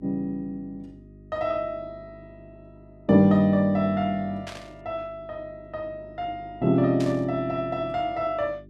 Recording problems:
electrical hum; 50 Hz, harmonics up to 400 Hz, SNR 23 dB
burst of static; at 4.5 s and at 7 s; peak -9 dB vs average level

